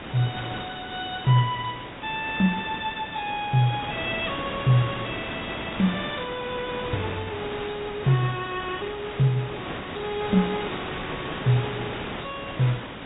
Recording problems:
treble missing; nothing above 4 kHz
background hiss; SNR 7 dB

